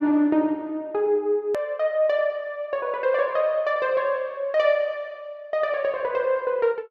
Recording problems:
hard cut with a click; at 1.5 s

